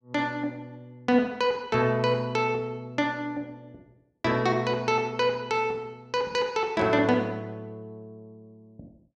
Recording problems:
none

